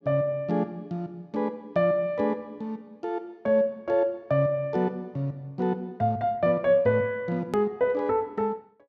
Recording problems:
click at an edit; at 7.5 s

